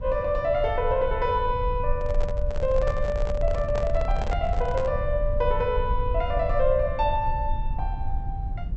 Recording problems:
treble missing; nothing above 7.9 kHz
low-frequency rumble; below 62 Hz, SNR 4 dB
microphone handling noise; from 2 to 5 s; peak -3 dB vs average level

